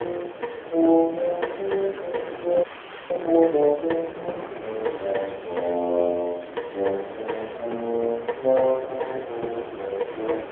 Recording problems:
phone line; 260 Hz to 2.7 kHz, AMR-NB
hiss; SNR 27 dB
wind noise; below 940 Hz, SNR 12 dB
crackle; from 2 to 4 s and from 4.5 to 6 s; loose cable, SNR 29 dB
audio freezing; at 2.5 s

